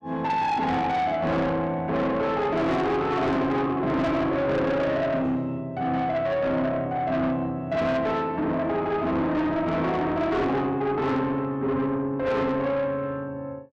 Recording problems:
distortion; soft clipping, signal-to-distortion ratio 8 dB

